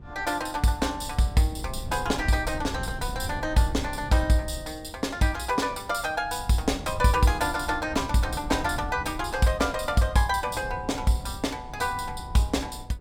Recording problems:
wind on the microphone; below 130 Hz, SNR 13 dB

